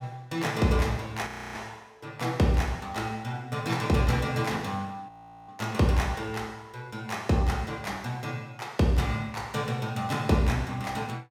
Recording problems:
frozen audio; at 1.5 s and at 5 s

